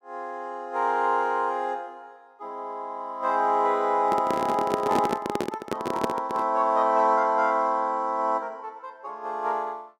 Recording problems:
handling noise; from 4 to 6.5 s; peak +3 dB vs average level

